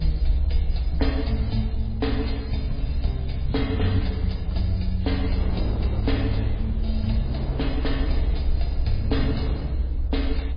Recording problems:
lossy codec; MP3, log-spectral distance 3 dB
low-frequency rumble; below 68 Hz, SNR -1 dB
wind noise; below 410 Hz, SNR 10 dB

